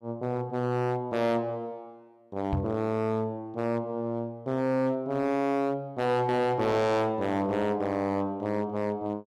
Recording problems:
distortion; hard clipping, uneven, signal-to-distortion ratio 6 dB
knock on the microphone; at 2.5 s; peak +3 dB vs average level

